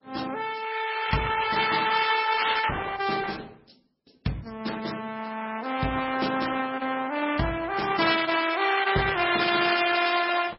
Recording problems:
codec artefacts; Opus, then MP3, log-spectral distance 7 dB, nothing above 5.3 kHz

